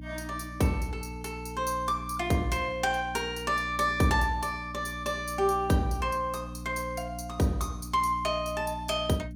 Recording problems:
electrical hum; 60 Hz, harmonics up to 300 Hz, SNR 12 dB

